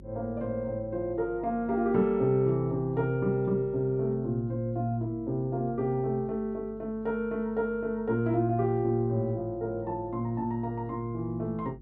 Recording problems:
hum; 50 Hz, harmonics up to 400 Hz, SNR 21 dB

